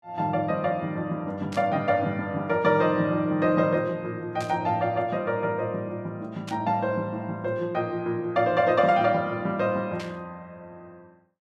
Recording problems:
burst of static; 4 times, first at 1.5 s; peak -9 dB vs average level

